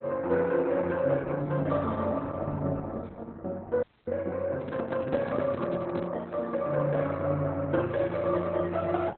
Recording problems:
lossy codec; Opus, log-spectral distance 3 dB, nothing above 3.8 kHz
audio cutting out; at 4 s
microphone handling noise; from 4.5 to 6 s; peak -2 dB vs average level

